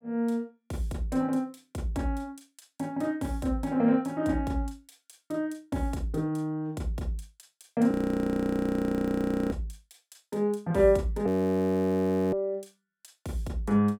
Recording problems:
audio freezing; at 8 s for 1.5 s and at 11 s for 1 s

